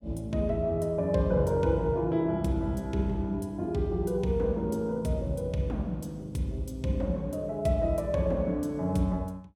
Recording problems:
none

